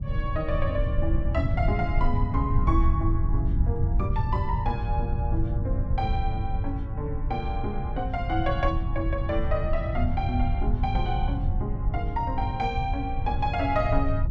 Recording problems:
rumble; below 100 Hz, SNR -2 dB

